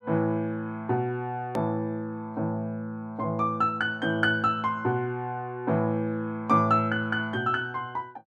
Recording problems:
click at an edit; at 1.5 s

